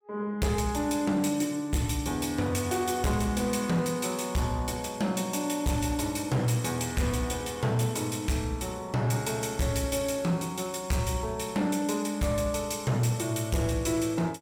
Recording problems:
distorted audio; hard clipping, signal-to-distortion ratio 12 dB

